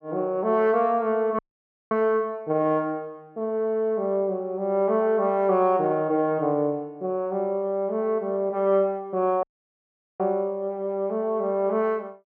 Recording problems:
audio cutting out; at 1.5 s for 0.5 s and at 9.5 s for 1 s

